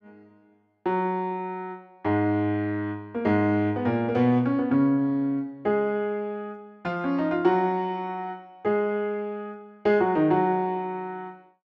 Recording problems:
none

